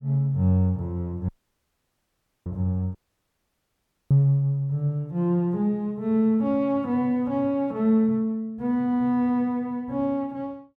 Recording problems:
audio cutting out; at 1.5 s for 1 s and at 3 s for 1 s

